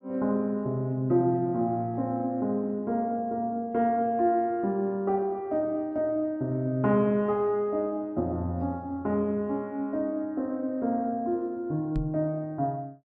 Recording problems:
microphone thump; at 12 s; peak -1 dB vs average level

